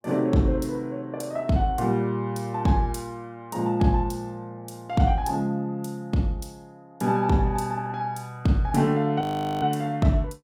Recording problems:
frozen audio; at 9 s

